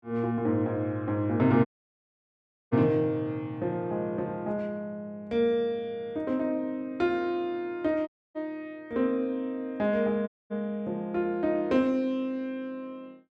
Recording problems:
dropout; at 1.5 s for 1 s, at 8 s and at 10 s

